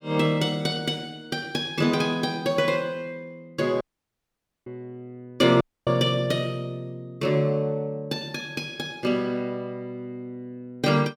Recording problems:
dropout; at 4 s for 1 s and at 5.5 s

